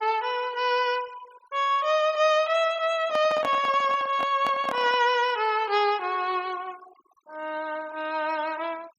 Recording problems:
noise reduction artefacts; signal-to-artefact ratio 23 dB
microphone handling noise; from 3 to 5 s; peak -4 dB vs average level

